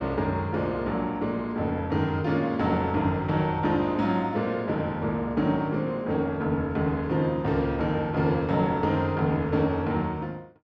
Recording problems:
none

